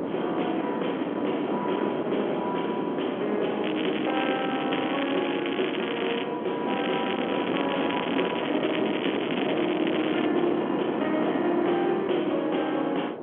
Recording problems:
phone line; 220 Hz to 3.4 kHz, G.711
distortion; hard clipping, signal-to-distortion ratio 15 dB
wind on the microphone; below 610 Hz, SNR 3 dB
crackle; from 3.5 to 6 s and from 6.5 to 10 s; loose cable, SNR 7 dB

